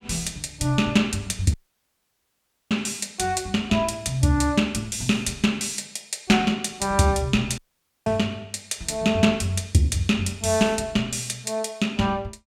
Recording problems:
audio cutting out; at 1.5 s for 1 s and at 7.5 s

